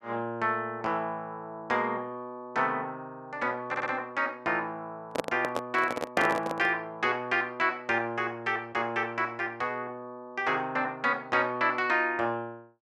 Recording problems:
stutter; at 3.5 s
microphone handling noise; from 5 to 6.5 s; peak +4 dB vs average level

